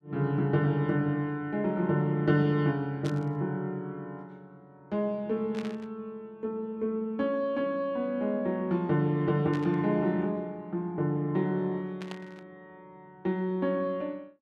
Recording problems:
static burst; 4 times, first at 3 s; peak -9 dB vs average level

